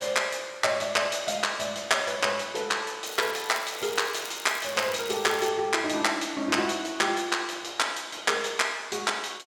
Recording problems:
crackling; from 3 to 5.5 s; loose cable, SNR 15 dB

